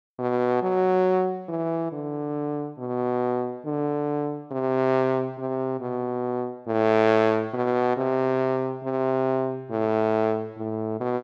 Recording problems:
none

